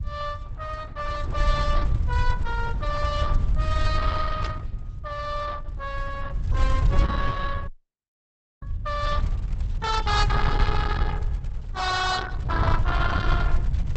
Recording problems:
lossy codec; Opus, log-spectral distance 4 dB, nothing above 8 kHz
rumble; below 80 Hz, SNR -1 dB
static burst; at 4.5 s; peak -3 dB vs average level
audio freezing; at 7.5 s for 1 s

